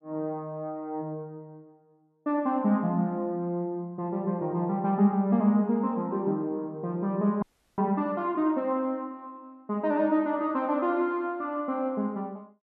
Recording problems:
audio freezing; at 7.5 s

